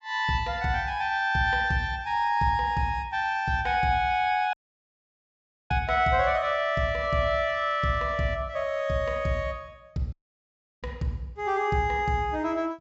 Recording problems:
low-pass filter; nothing above 7.6 kHz
audio cutting out; at 4.5 s for 1 s and at 10 s for 0.5 s

